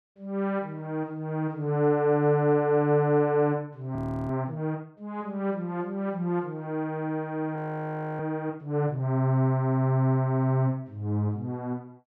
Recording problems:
audio freezing; at 4 s and at 7.5 s for 0.5 s

